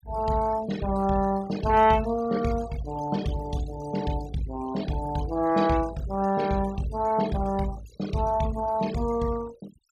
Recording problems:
denoising artefacts; signal-to-artefact ratio 17 dB

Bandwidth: 14.5 kHz